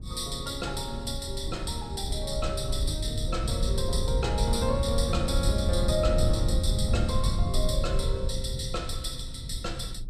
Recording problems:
rumble; below 98 Hz, SNR 0 dB

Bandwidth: 14.5 kHz